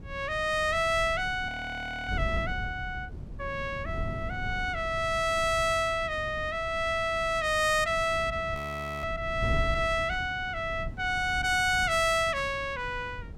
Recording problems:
wind on the microphone; below 140 Hz, SNR 12 dB
audio freezing; at 1.5 s for 0.5 s and at 8.5 s

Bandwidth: 16.5 kHz